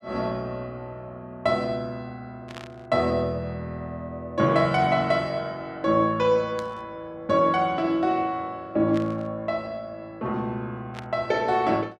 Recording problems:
static burst; 4 times, first at 2.5 s; peak -9 dB vs average level

